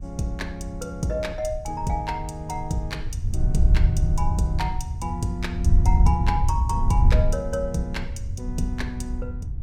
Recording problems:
wind on the microphone; below 80 Hz, SNR -4 dB

